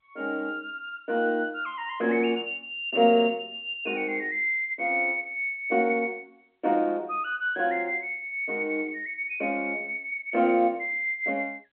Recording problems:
telephone audio; 190 Hz to 3.3 kHz, G.711

